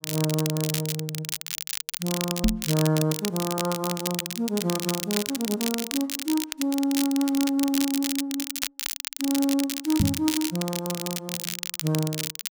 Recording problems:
crackling; vinyl, SNR 3 dB
microphone bump; at 2.5 s and at 10 s; peak +8 dB vs average level

